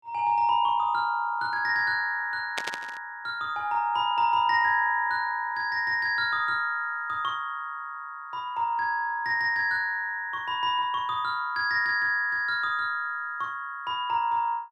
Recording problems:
burst of static; at 2.5 s; peak 0 dB vs average level

